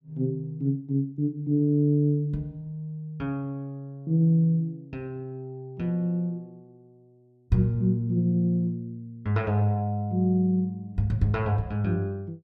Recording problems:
none

